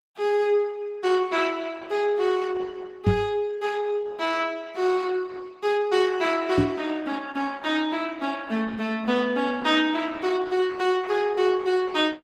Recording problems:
lossy compression; Opus, log-spectral distance 3 dB
microphone thump; at 3 s and at 6.5 s; peak +8 dB vs average level

